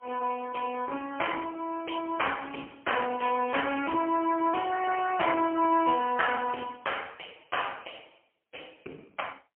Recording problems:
phone line; 170 Hz to 3.2 kHz, AMR-NB, then MP3

